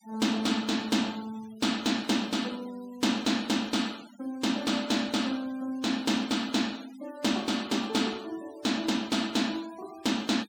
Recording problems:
noise reduction artefacts; signal-to-artefact ratio 19 dB

